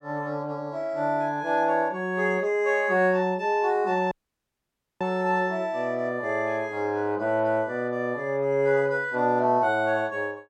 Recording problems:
dropout; at 4 s for 1 s

